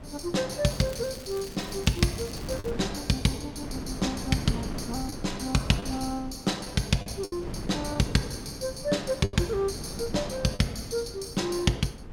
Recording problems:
wind noise; below 350 Hz, SNR 11 dB
lost packets; 3% of the sound replaced, filled with the last packet
crackle; from 0.5 to 2.5 s; loose cable, SNR 17 dB

